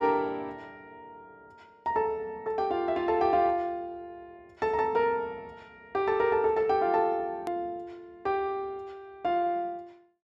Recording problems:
click at an edit; at 7.5 s

